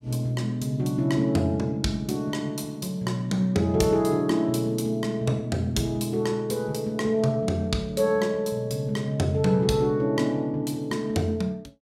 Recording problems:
none

